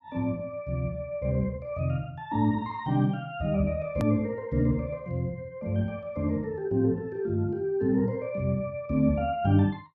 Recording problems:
hard cut with a click; at 4 s

